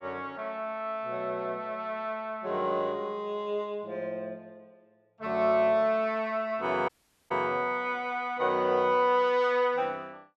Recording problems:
audio cutting out; at 7 s

